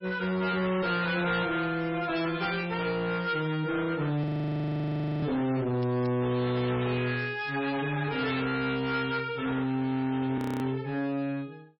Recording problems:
lossy codec; MP3, log-spectral distance 4 dB, nothing above 17.1 kHz
distorted audio; hard clipping, uneven, signal-to-distortion ratio 6 dB
audio freezing; at 4 s for 1 s and at 10 s
crackling; from 5.5 to 8 s; loose cable, SNR 23 dB

